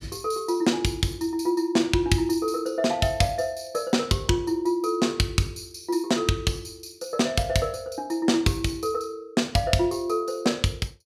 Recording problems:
none

